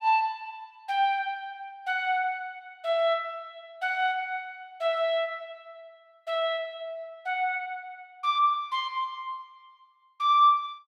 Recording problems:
none

